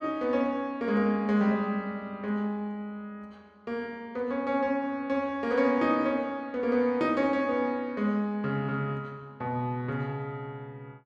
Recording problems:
none

